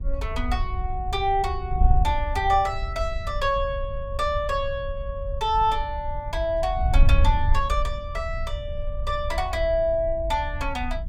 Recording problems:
wind noise; below 66 Hz, SNR 3 dB

